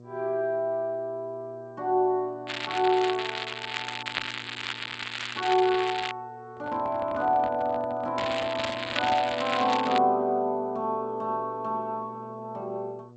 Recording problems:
codec artefacts; G.722, log-spectral distance 8 dB
hum; 60 Hz, harmonics up to 720 Hz, SNR 22 dB
crackling; from 2.5 to 6 s and from 8 to 10 s; loose cable, SNR 5 dB
microphone handling noise; from 6.5 to 9.5 s; peak -7 dB vs average level

